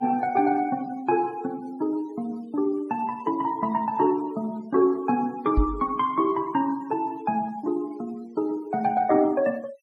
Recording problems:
denoising artefacts; signal-to-artefact ratio 25 dB
microphone thump; at 5.5 s; peak +6 dB vs average level

